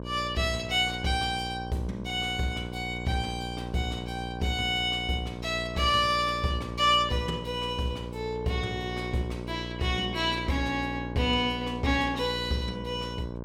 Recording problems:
hum; 60 Hz, harmonics up to 1.1 kHz, SNR 9 dB

